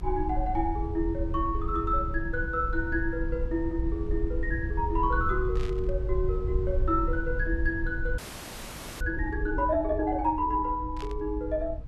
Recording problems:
rumble; below 68 Hz, SNR 4 dB
burst of static; at 5.5 s and at 11 s; peak -9 dB vs average level
audio freezing; at 8 s for 1 s

